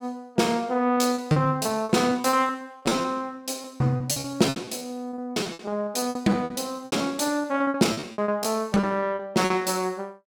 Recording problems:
packet loss; 18% of the sound replaced, filled with repeated pitch periods

